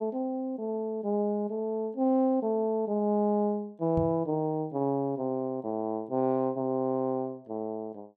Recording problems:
microphone thump; at 4 s; peak 0 dB vs average level

